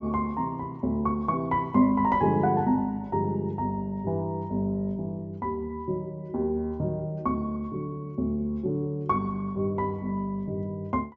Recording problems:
treble missing; nothing above 8 kHz

